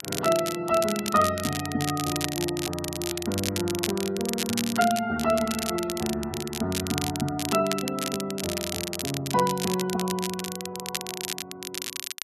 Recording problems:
codec artefacts; Vorbis, then Vorbis, log-spectral distance 2 dB
crackling; vinyl, SNR 5 dB

